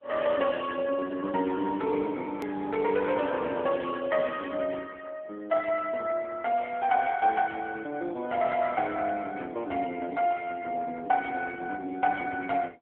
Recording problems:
telephone audio; 280 Hz to 2.8 kHz, AMR-NB
click at an edit; at 2.5 s

